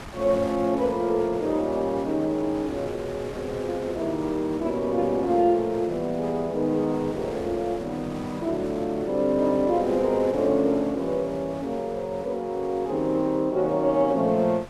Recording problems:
wind noise; below 1.6 kHz, SNR 16 dB

